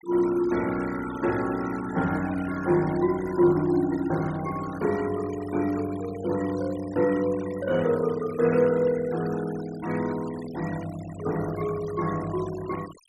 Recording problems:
denoising artefacts; signal-to-artefact ratio 17 dB

